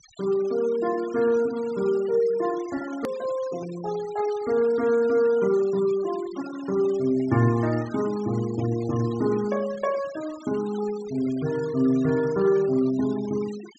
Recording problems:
treble missing; nothing above 8 kHz
denoising artefacts; signal-to-artefact ratio 19 dB
hard cut with a click; at 3 s

